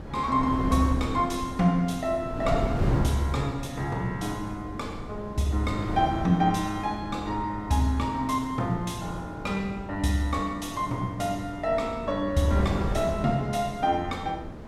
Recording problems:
wind on the microphone; below 350 Hz, SNR 7 dB

